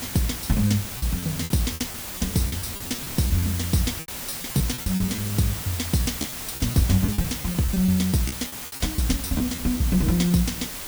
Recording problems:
hiss; slope -1 dB per octave, SNR 6 dB
wind on the microphone; below 260 Hz, SNR 20 dB
lost packets; 12% of the sound replaced, filled with repeated pitch periods

